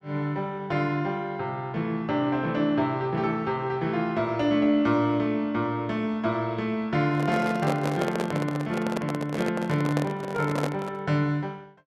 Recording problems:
microphone handling noise; from 7 to 11 s; peak +2 dB vs average level

